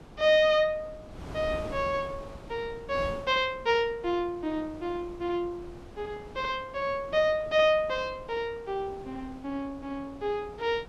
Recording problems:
wind noise; below 560 Hz, SNR 17 dB

